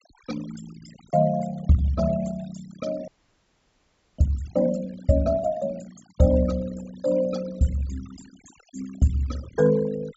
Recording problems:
treble missing; nothing above 8 kHz
denoising artefacts; signal-to-artefact ratio 20 dB
audio freezing; at 3 s for 1 s

